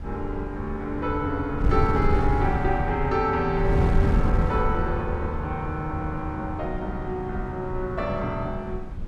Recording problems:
wind noise; below 110 Hz, SNR 3 dB

